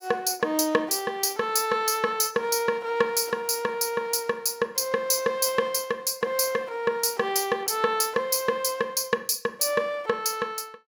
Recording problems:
none

